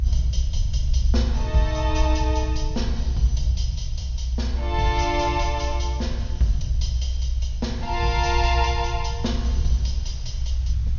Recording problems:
treble missing; nothing above 6.6 kHz
hiss; slope -1 dB per octave, SNR 27 dB
low-frequency rumble; below 66 Hz, strongest tone 62 Hz, SNR -1 dB

